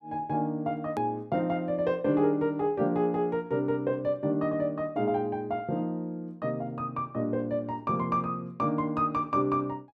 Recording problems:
edit click; at 1 s

